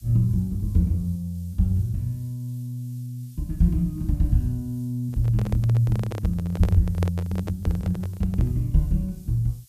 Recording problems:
background hiss; slope +6 dB per octave, SNR 29 dB
microphone handling noise; from 5 to 8.5 s; peak -2 dB vs average level

